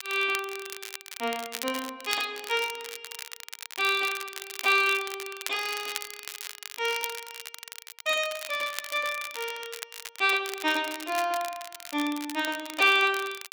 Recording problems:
crackling; vinyl, SNR 11 dB

